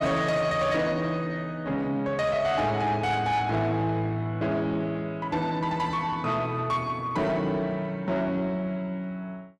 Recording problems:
distorted audio; soft clipping, signal-to-distortion ratio 12 dB

